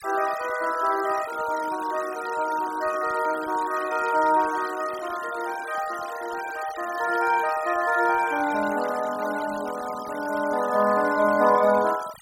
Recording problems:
denoising artefacts; signal-to-artefact ratio 15 dB

